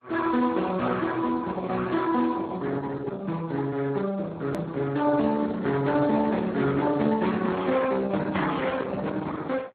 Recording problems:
lossy codec; Opus, then Speex, log-spectral distance 4 dB, nothing above 13.1 kHz
edit click; at 4.5 s

